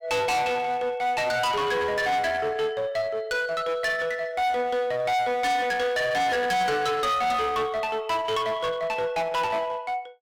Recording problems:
distorted audio; hard clipping, uneven, signal-to-distortion ratio 7 dB

